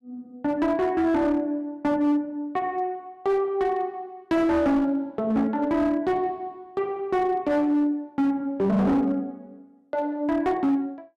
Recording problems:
distorted audio; hard clipping, signal-to-distortion ratio 12 dB

